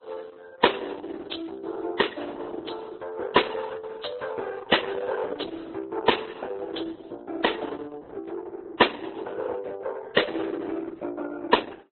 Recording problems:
codec artefacts; Opus, then Vorbis, log-spectral distance 6 dB, nothing above 4 kHz

